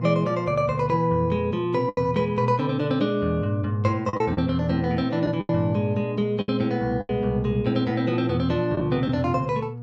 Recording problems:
electrical hum; 60 Hz, harmonics up to 720 Hz, SNR 9 dB
packet loss; 5% of the sound replaced, filled with the last packet

